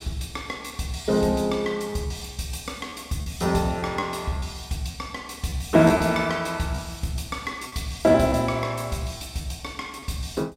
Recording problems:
lost packets; 5% of the sound replaced, filled with repeated pitch periods

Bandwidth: 16 kHz